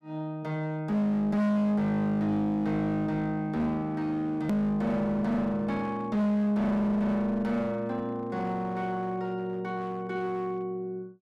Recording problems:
distorted audio; hard clipping, uneven, signal-to-distortion ratio 6 dB
click at an edit; at 4.5 s

